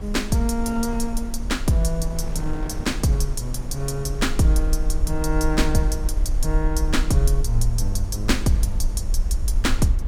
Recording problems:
low-frequency rumble; below 50 Hz, SNR 3 dB
wind noise; below 330 Hz, SNR 13 dB

